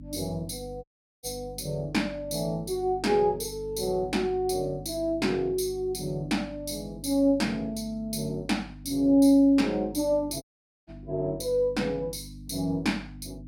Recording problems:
hum; 50 Hz, harmonics up to 300 Hz, SNR 17 dB
dropout; at 1 s and at 10 s

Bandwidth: 16.5 kHz